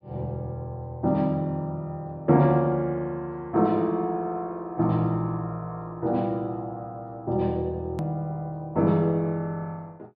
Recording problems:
low-pass filter; nothing above 5.5 kHz
hard cut with a click; at 8 s

